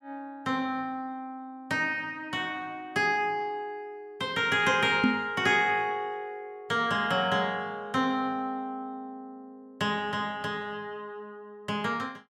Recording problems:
microphone bump; at 5 s; peak +7 dB vs average level

